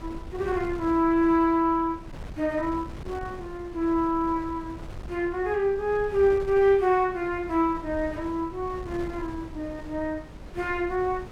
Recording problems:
wind on the microphone; below 260 Hz, SNR 16 dB

